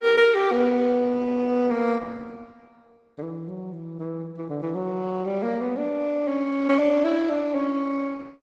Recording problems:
codec artefacts; Opus, log-spectral distance 3 dB, nothing above 14.6 kHz

